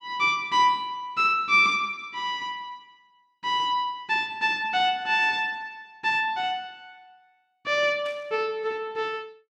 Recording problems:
burst of static; at 8 s; peak -17 dB vs average level

